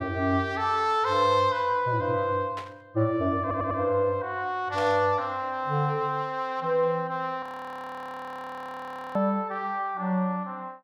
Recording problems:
burst of static; at 2.5 s and at 5 s; peak -7 dB vs average level
audio stuttering; at 3.5 s
audio freezing; at 7.5 s for 1.5 s

